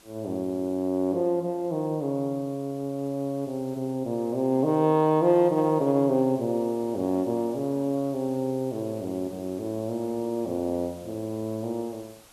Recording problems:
background hiss; slope -2 dB per octave, SNR 25 dB

